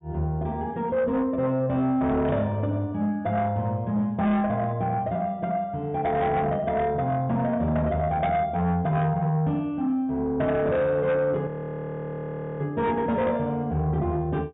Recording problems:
treble missing; nothing above 4 kHz
distortion; soft clipping, signal-to-distortion ratio 11 dB
audio freezing; at 11 s for 1 s

